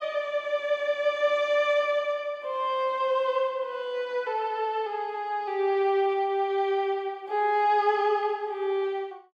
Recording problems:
none

